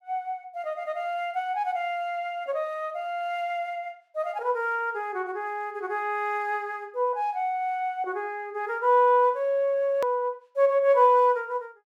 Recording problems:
click at an edit; at 10 s

